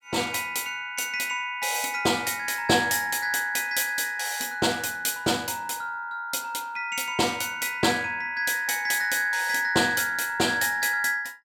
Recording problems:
none

